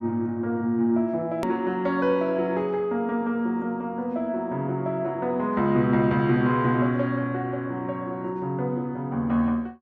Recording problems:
hard cut with a click; at 1.5 s

